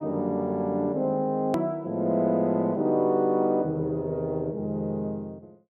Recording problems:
click at an edit; at 1.5 s

